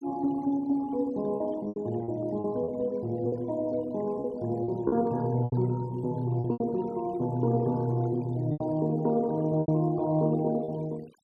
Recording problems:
noise reduction artefacts; signal-to-artefact ratio 24 dB
packet loss; 7% of the sound replaced, filled with repeated pitch periods

